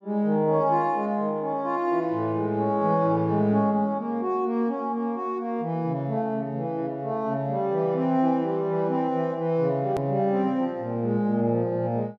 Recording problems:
hard cut with a click; at 10 s

